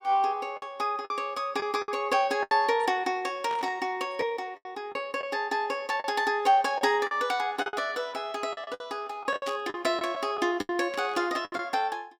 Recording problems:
lost packets; 9% of the sound replaced, filled with the last packet
static burst; at 3.5 s, at 9.5 s and at 11 s; peak -7 dB vs average level

